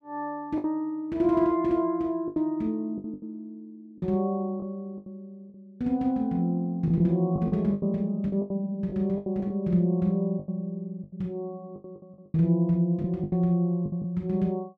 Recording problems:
lost packets; 10% of the sound replaced, filled with the last packet

